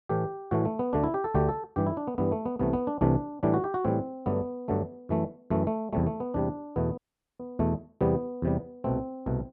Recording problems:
audio cutting out; at 7 s

